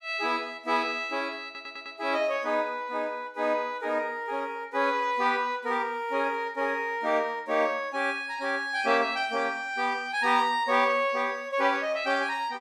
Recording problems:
audio stuttering; at 1.5 s

